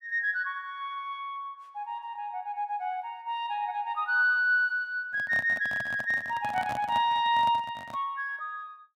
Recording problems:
microphone handling noise; from 5 to 8 s; peak -6 dB vs average level

